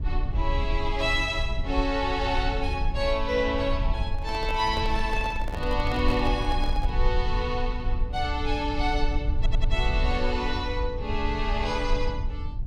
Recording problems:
low-frequency rumble; below 60 Hz, SNR 3 dB
handling noise; from 4 to 7 s; peak -4 dB vs average level
audio stuttering; at 9.5 s

